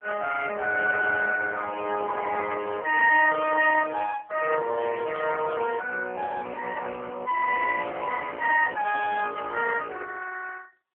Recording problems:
telephone audio; 300 Hz to 3 kHz, AMR-NB

